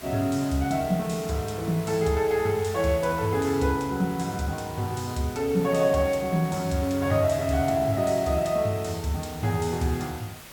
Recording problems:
background hiss; slope -2 dB per octave, SNR 16 dB

